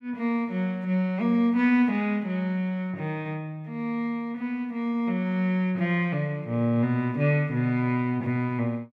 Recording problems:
none

